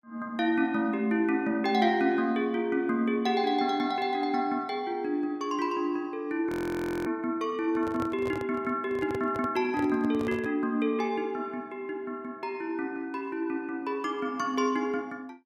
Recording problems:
frozen audio; at 6.5 s for 0.5 s
microphone handling noise; from 7.5 to 11 s; peak -5 dB vs average level

